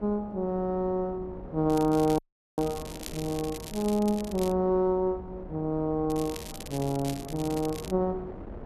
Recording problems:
wind noise; below 440 Hz, SNR 15 dB
crackling; from 1.5 to 4.5 s and from 6 to 8 s; loose cable, SNR 14 dB
audio cutting out; at 2 s

